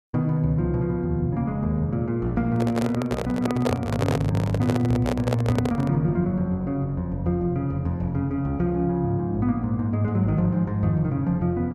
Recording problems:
microphone handling noise; from 2.5 to 6 s; peak +3 dB vs average level

